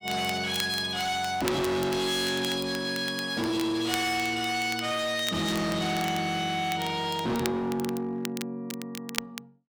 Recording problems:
distortion; hard clipping, signal-to-distortion ratio 6 dB
crackling; vinyl, SNR 13 dB

